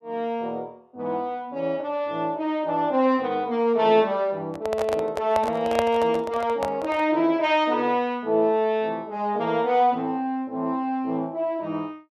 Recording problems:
microphone handling noise; from 4.5 to 7 s; peak +3 dB vs average level

